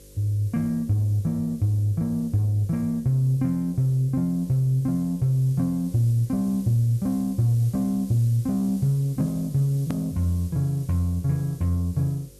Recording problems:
hum; 50 Hz, harmonics up to 550 Hz, SNR 27 dB
hiss; SNR 25 dB
click at an edit; at 10 s

